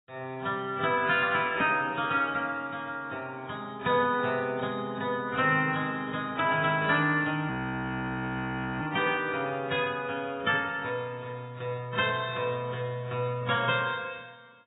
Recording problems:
lossy codec; AAC, then AAC, log-spectral distance 3 dB, nothing above 3.2 kHz
audio freezing; at 7.5 s for 1.5 s

